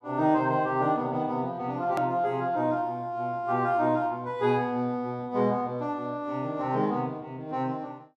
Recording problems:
hard cut with a click; at 2 s

